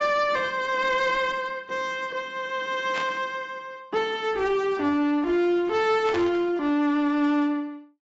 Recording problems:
lossy compression; AAC, log-spectral distance 2 dB, nothing above 7.6 kHz
distortion; hard clipping, uneven, signal-to-distortion ratio 10 dB
burst of static; at 3 s and at 6 s; peak -5 dB vs average level

